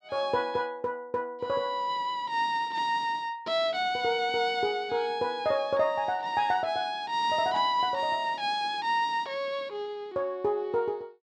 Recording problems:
none

